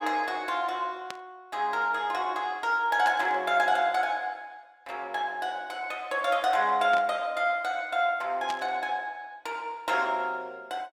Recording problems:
burst of static; 4 times, first at 1 s; peak -5 dB vs average level

